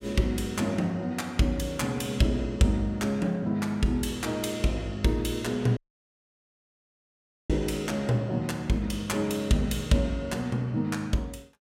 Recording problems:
dropout; at 6 s for 1.5 s

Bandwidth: 16 kHz